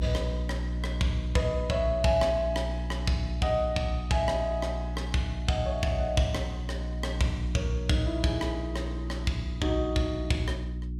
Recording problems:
hum; 60 Hz, harmonics up to 360 Hz, SNR 4 dB

